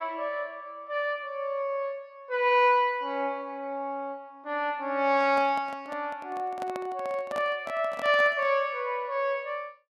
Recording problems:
handling noise; from 5 to 8.5 s; peak -5 dB vs average level

